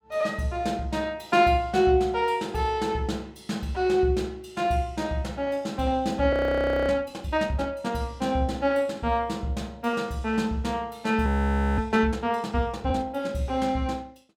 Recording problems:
frozen audio; at 6.5 s for 0.5 s and at 11 s for 0.5 s

